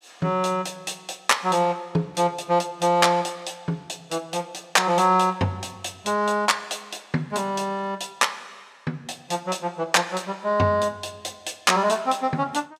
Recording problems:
none

